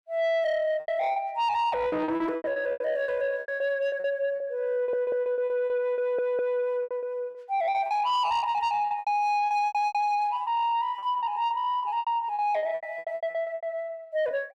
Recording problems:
distorted audio; soft clipping, signal-to-distortion ratio 11 dB
lost packets; 18% of the sound replaced, filled with repeated pitch periods
stutter; at 5 s and at 6 s

